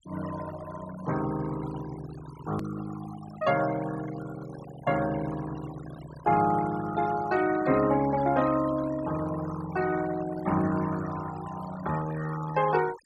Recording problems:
noise reduction artefacts; signal-to-artefact ratio 14 dB
edit click; at 2.5 s

